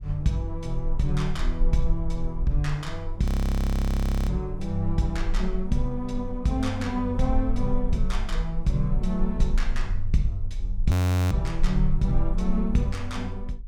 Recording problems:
rumble; below 38 Hz, strongest tone 22 Hz, SNR 5 dB
audio freezing; at 3.5 s for 1 s and at 11 s

